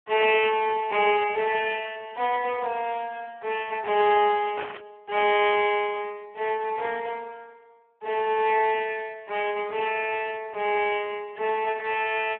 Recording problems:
telephone audio; 280 Hz to 3.3 kHz, Speex
burst of static; at 4.5 s; peak -5 dB vs average level

